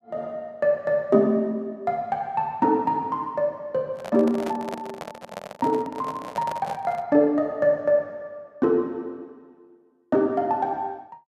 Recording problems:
handling noise; from 4 to 7 s; peak -5 dB vs average level

